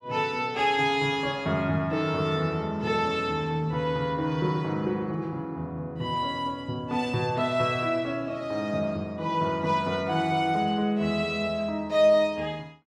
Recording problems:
none

